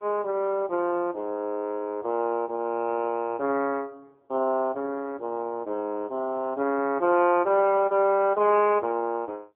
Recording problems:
telephone audio; 240 Hz to 3.1 kHz, AMR-NB

